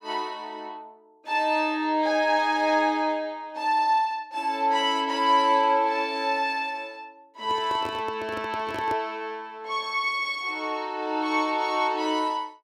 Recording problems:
handling noise; from 7.5 to 9 s; peak -6 dB vs average level

